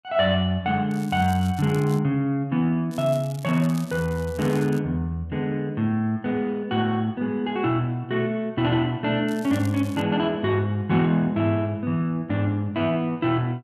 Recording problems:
crackle; from 1 to 2 s, from 3 to 5 s and at 9.5 s; loose cable, SNR 21 dB

